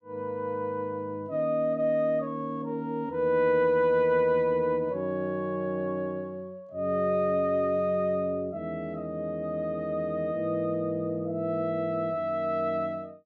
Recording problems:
none

